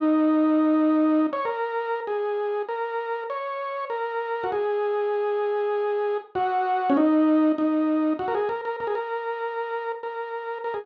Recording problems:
none

